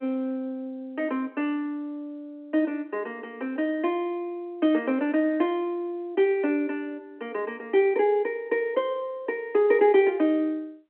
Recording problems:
phone line; 240 Hz to 3.2 kHz, G.711

